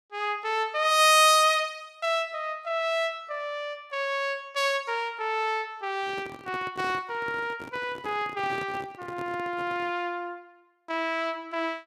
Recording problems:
handling noise; from 6 to 10 s; peak -9 dB vs average level

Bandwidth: 15 kHz